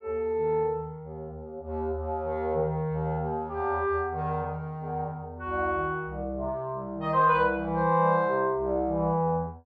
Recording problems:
none

